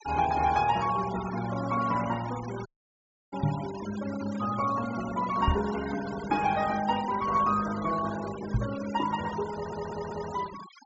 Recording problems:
treble missing; nothing above 8 kHz
noise reduction artefacts; signal-to-artefact ratio 13 dB
audio cutting out; at 2.5 s for 0.5 s
microphone thump; at 3.5 s, at 5.5 s and at 8.5 s; peak +6 dB vs average level
stutter; at 9.5 s

